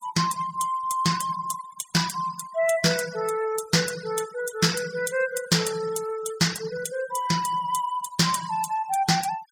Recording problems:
denoising artefacts; signal-to-artefact ratio 14 dB

